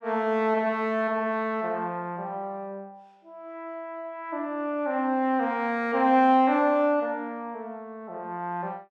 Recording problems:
none

